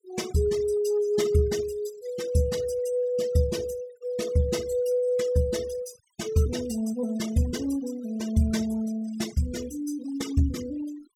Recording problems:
noise reduction artefacts; signal-to-artefact ratio 16 dB

